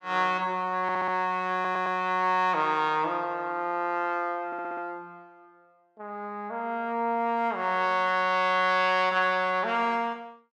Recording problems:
stutter; at 1 s, at 1.5 s and at 4.5 s

